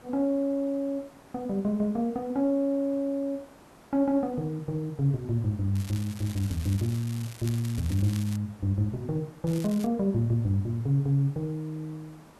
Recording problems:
hiss; slope -6 dB per octave, SNR 25 dB
crackling; from 6 to 8.5 s and at 9.5 s; loose cable, SNR 17 dB

